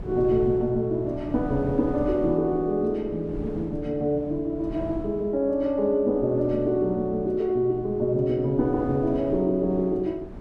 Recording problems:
wind on the microphone; below 280 Hz, SNR 15 dB

